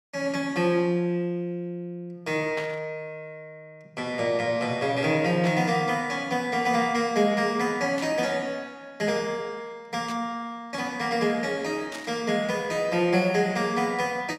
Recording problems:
burst of static; 5 times, first at 2.5 s; peak -7 dB vs average level

